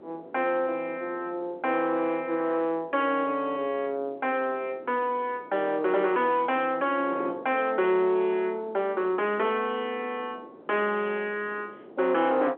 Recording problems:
phone line; 280 Hz to 3.4 kHz, G.711
distorted audio; soft clipping, signal-to-distortion ratio 9 dB
wind noise; below 590 Hz, SNR 20 dB

